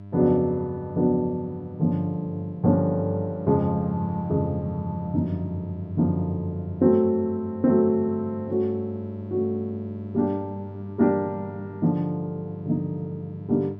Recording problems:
hum; 50 Hz, harmonics up to 700 Hz, SNR 14 dB

